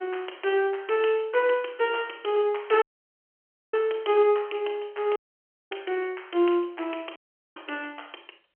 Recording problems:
phone line; 300 Hz to 3.2 kHz, G.711
dropout; at 3 s for 1 s, at 5 s for 0.5 s and at 7 s

